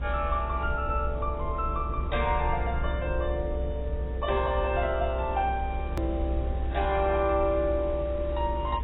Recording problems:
lossy codec; AAC, log-spectral distance 3 dB, nothing above 3.8 kHz
hum; 50 Hz, harmonics up to 600 Hz, SNR 15 dB
background hiss; SNR 21 dB
rumble; below 66 Hz, strongest tone 62 Hz, SNR 4 dB
hard cut with a click; at 6 s

